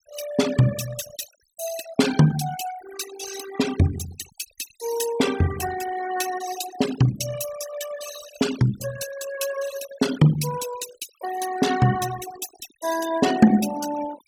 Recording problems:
noise reduction artefacts; signal-to-artefact ratio 9 dB

